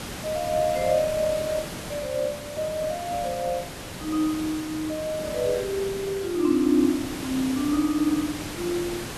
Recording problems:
background hiss; slope -4 dB per octave, SNR 9 dB

